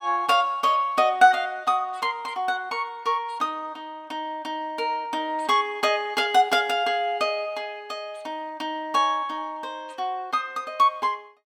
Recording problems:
none

